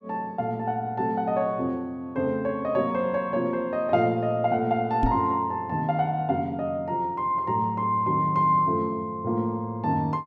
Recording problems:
microphone bump; at 5 s; peak +4 dB vs average level

